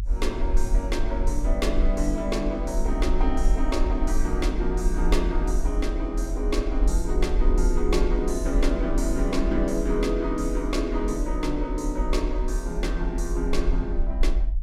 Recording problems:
low-frequency rumble; below 44 Hz, SNR 0 dB

